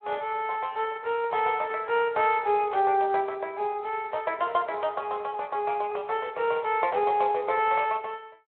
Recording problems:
phone line; 340 Hz to 3.3 kHz, Speex

